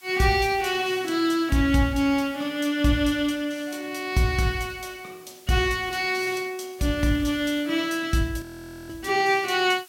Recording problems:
background hiss; slope +2 dB per octave, SNR 25 dB
frozen audio; at 8.5 s

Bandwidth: 16.5 kHz